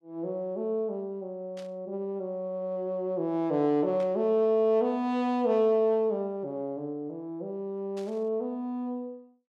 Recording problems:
static burst; at 1.5 s, at 4 s and at 8 s; peak -15 dB vs average level

